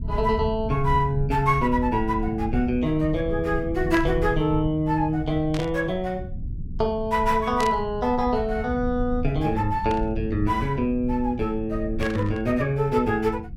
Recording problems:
rumble; below 100 Hz, SNR 10 dB
static burst; 5 times, first at 4 s; peak -6 dB vs average level

